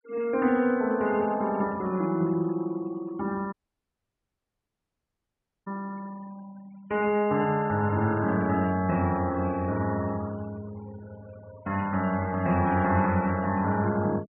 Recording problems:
low-pass filter; nothing above 3.3 kHz
noise reduction artefacts; signal-to-artefact ratio 22 dB
dropout; at 3.5 s for 2 s

